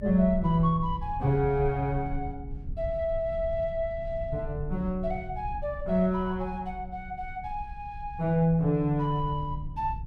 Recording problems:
low-frequency rumble; below 82 Hz, SNR 11 dB

